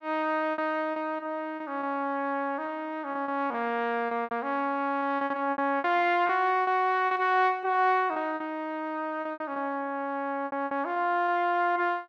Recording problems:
lost packets; 10% of the sound replaced, filled with repeated pitch periods

